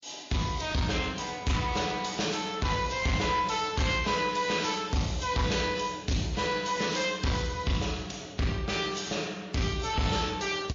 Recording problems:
lossy codec; MP3, then Vorbis, log-spectral distance 6 dB, nothing above 6.5 kHz
distorted audio; soft clipping, signal-to-distortion ratio 8 dB

